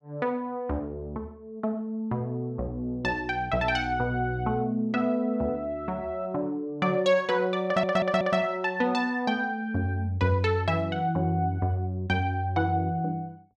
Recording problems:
stutter; at 7.5 s

